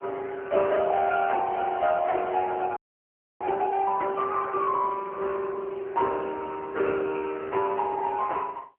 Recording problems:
telephone audio; 320 Hz to 2 kHz, AMR-NB
frozen audio; at 3 s for 0.5 s

